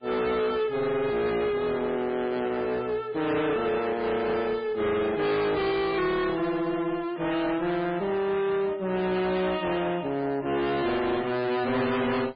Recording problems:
codec artefacts; MP3, then MP3, log-spectral distance 3 dB, nothing above 4.8 kHz
distorted audio; hard clipping, uneven, signal-to-distortion ratio 6 dB

